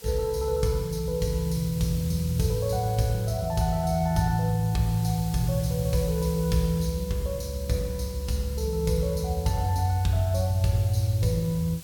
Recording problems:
background hiss; slope 0 dB per octave, SNR 17 dB

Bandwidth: 17 kHz